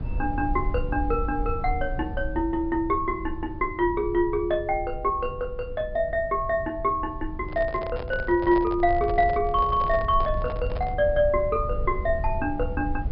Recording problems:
treble cut off; nothing above 5.5 kHz
low-frequency rumble; below 78 Hz, SNR 9 dB
microphone handling noise; from 7.5 to 11 s; peak -5 dB vs average level

